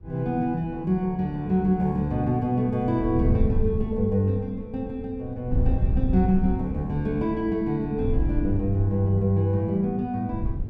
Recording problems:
wind noise; below 96 Hz, SNR 4 dB

